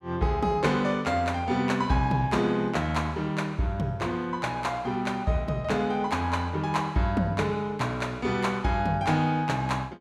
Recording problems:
none

